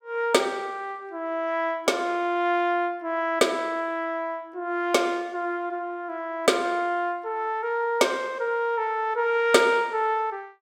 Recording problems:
none

